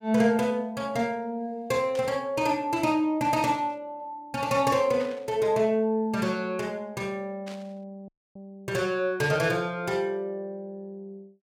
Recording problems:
static burst; 4 times, first at 2 s; peak -11 dB vs average level
audio cutting out; at 8 s

